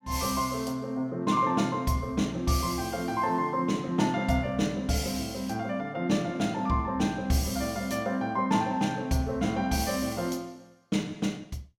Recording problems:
none

